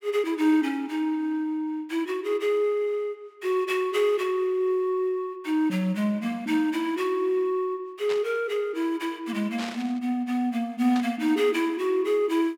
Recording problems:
burst of static; at 8 s, at 9.5 s and at 11 s; peak -5 dB vs average level

